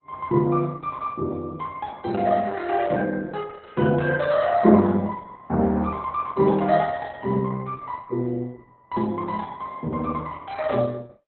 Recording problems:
lossy compression; Opus, log-spectral distance 3 dB, nothing above 4 kHz

